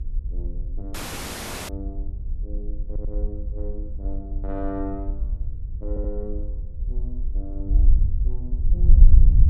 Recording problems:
hum; 50 Hz, harmonics up to 500 Hz, SNR 19 dB
wind on the microphone; below 54 Hz, SNR -12 dB
audio cutting out; at 1 s for 1 s
audio stuttering; at 3 s and at 6 s

